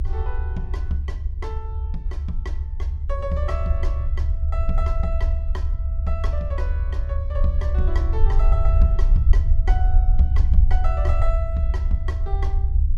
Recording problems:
rumble; below 70 Hz, SNR -9 dB

